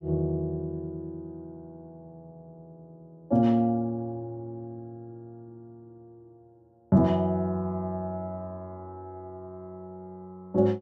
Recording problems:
none

